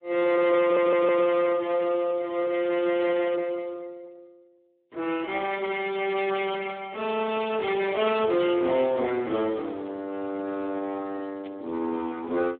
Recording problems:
telephone audio; 260 Hz to 3 kHz, Speex
distortion; hard clipping, uneven, signal-to-distortion ratio 10 dB
audio stuttering; at 0.5 s
static burst; 4 times, first at 3 s; peak -17 dB vs average level

